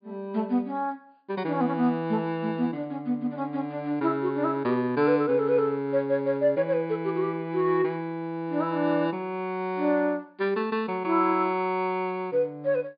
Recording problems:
low-pass filter; nothing above 4.8 kHz

